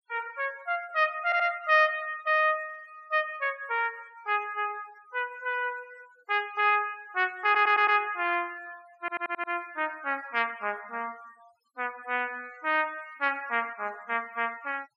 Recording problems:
denoising artefacts; signal-to-artefact ratio 25 dB
audio stuttering; at 1.5 s, at 7.5 s and at 9 s

